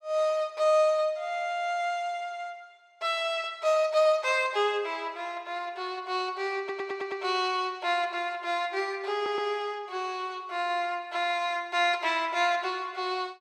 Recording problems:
stutter; at 6.5 s and at 9 s

